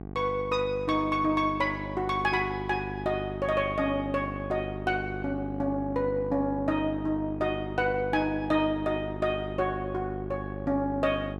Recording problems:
hum; 50 Hz, harmonics up to 1.1 kHz, SNR 9 dB

